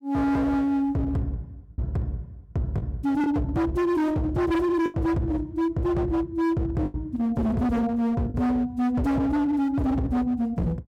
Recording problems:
distorted audio; hard clipping, signal-to-distortion ratio 7 dB
packet loss; 3% of the sound replaced, filled with the last packet

